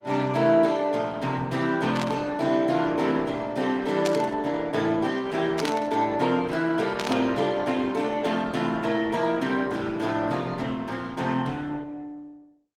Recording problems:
lossy codec; Opus, log-spectral distance 3 dB
static burst; 4 times, first at 2 s; peak -1 dB vs average level

